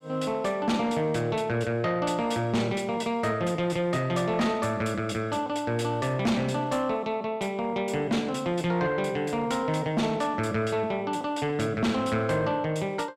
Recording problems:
distorted audio; soft clipping, signal-to-distortion ratio 11 dB

